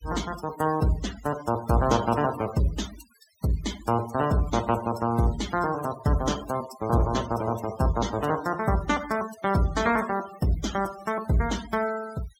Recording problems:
denoising artefacts; signal-to-artefact ratio 14 dB

